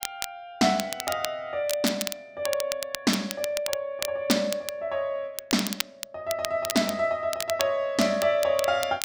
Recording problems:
crackling; vinyl, SNR 7 dB

